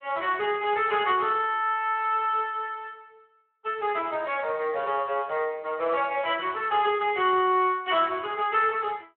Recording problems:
telephone audio; 320 Hz to 3.7 kHz, Speex

